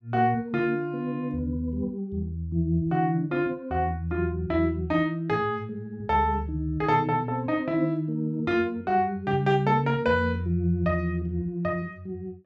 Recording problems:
none

